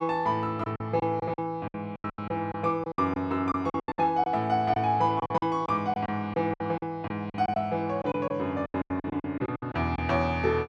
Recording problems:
lost packets; 15% of the sound replaced, filled with silence

